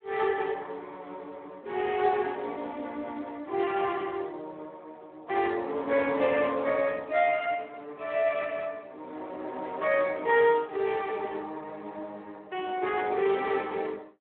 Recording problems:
phone line; 260 Hz to 3.5 kHz, Speex

